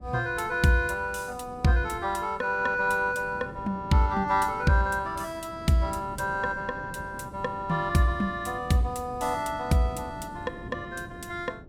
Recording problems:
wind noise; below 310 Hz, SNR 17 dB

